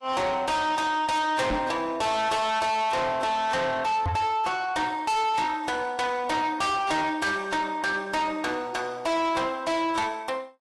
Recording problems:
codec artefacts; AAC, log-spectral distance 2 dB, nothing above 11 kHz
distortion; soft clipping, signal-to-distortion ratio 7 dB
microphone bump; at 1.5 s and at 4 s; peak +3 dB vs average level

